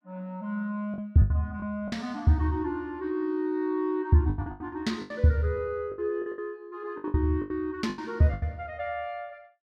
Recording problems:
lost packets; 11% of the sound replaced, filled with the last packet

